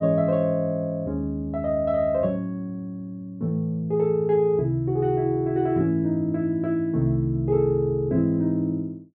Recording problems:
none

